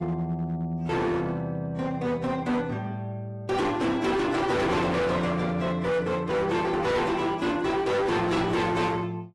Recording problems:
lossy codec; AAC, log-spectral distance 2 dB, nothing above 11.3 kHz
distortion; hard clipping, signal-to-distortion ratio 7 dB

